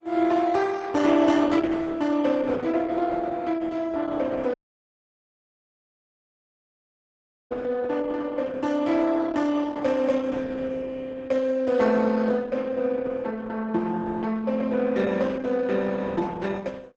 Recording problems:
codec artefacts; Opus, log-spectral distance 4 dB, nothing above 7.8 kHz
audio cutting out; at 4.5 s for 3 s

